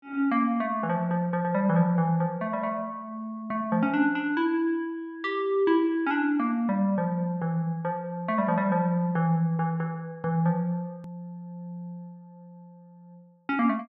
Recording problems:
hard cut with a click; at 11 s

